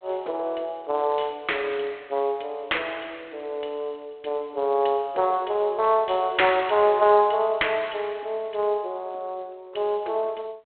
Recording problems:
telephone audio; 340 Hz to 3.5 kHz, G.726

